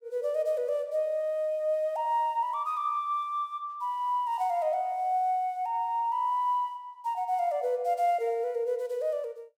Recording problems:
none

